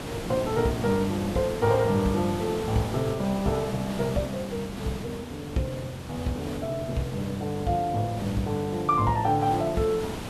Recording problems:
hiss; slope -5 dB per octave, SNR 9 dB

